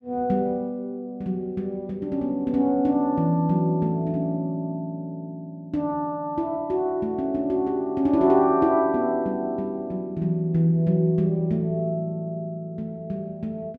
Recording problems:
none

